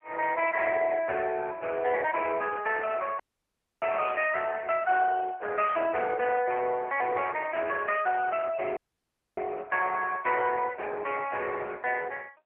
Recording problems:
phone line; 340 Hz to 3.2 kHz, AMR-NB
dropout; at 3 s for 0.5 s and at 9 s for 0.5 s

